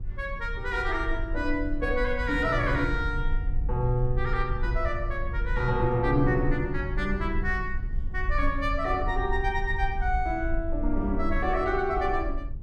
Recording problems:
rumble; below 54 Hz, strongest tone 20 Hz, SNR 5 dB

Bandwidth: 13 kHz